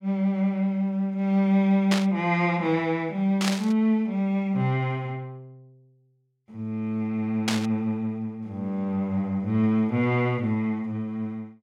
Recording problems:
burst of static; at 2 s, at 3.5 s and at 7.5 s; peak +3 dB vs average level

